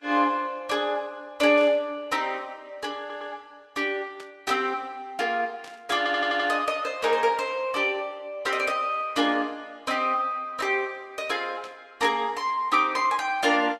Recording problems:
codec artefacts; Vorbis, log-spectral distance 2 dB, nothing above 13.1 kHz
burst of static; 5 times, first at 1.5 s; peak -14 dB vs average level
stutter; at 3 s and at 6 s

